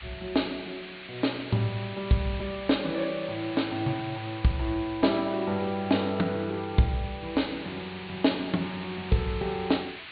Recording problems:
treble cut off; nothing above 4.5 kHz
background hiss; SNR 13 dB

